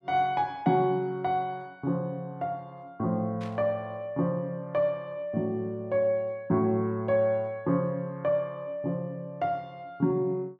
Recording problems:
static burst; at 3.5 s; peak -13 dB vs average level

